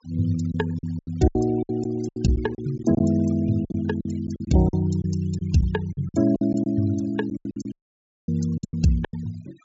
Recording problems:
treble missing; nothing above 7.4 kHz
denoising artefacts; signal-to-artefact ratio 22 dB
packet loss; 14% of the sound replaced, filled with silence
dropout; at 7.5 s for 0.5 s

